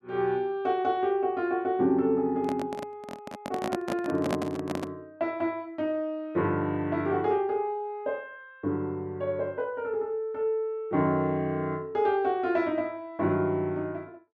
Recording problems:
microphone handling noise; from 2.5 to 5 s; peak +3 dB vs average level

